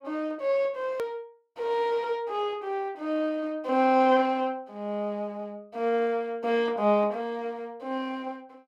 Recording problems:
hard cut with a click; at 1 s

